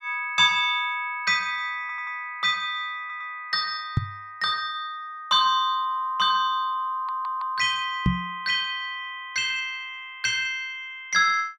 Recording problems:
audio stuttering; at 2 s, at 3 s and at 7 s
microphone thump; at 4 s and at 8 s; peak +6 dB vs average level

